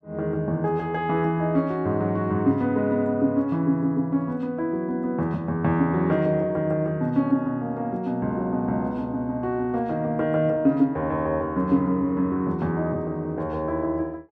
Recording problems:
none

